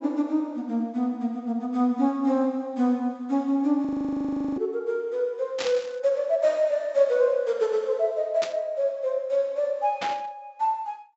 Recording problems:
treble missing; nothing above 7.7 kHz
audio freezing; at 4 s for 0.5 s
static burst; at 5.5 s, at 8.5 s and at 10 s; peak -2 dB vs average level

